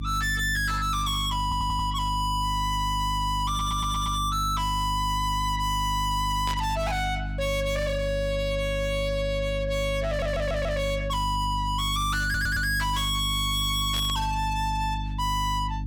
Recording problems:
distortion; soft clipping, signal-to-distortion ratio 6 dB
hum; 50 Hz, harmonics up to 300 Hz, SNR 6 dB
audio stuttering; 4 times, first at 1.5 s
static burst; at 6.5 s and at 14 s; peak -5 dB vs average level

